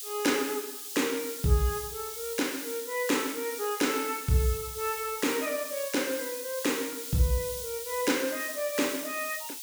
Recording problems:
hiss; SNR 6 dB

